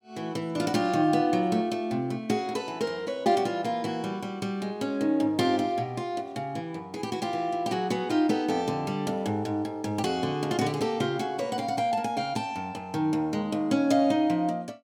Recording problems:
none

